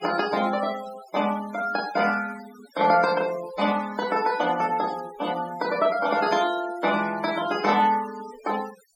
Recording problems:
noise reduction artefacts; signal-to-artefact ratio 15 dB

